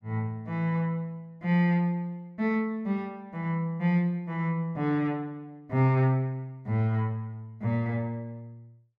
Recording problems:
none

